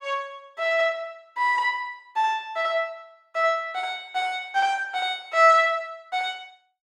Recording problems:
none

